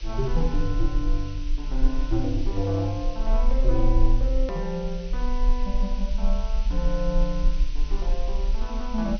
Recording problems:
treble cut off; nothing above 6.1 kHz
hum; 50 Hz, harmonics up to 600 Hz, SNR 27 dB
background hiss; SNR 15 dB
low-frequency rumble; below 38 Hz, strongest tone 20 Hz, SNR -2 dB
edit click; at 4.5 s

